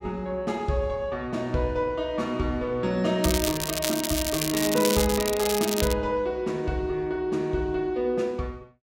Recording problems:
crackling; from 3 to 6 s; loose cable, SNR 2 dB

